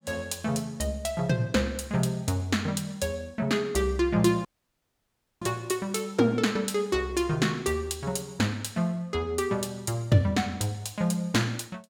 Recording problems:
audio cutting out; at 4.5 s for 1 s

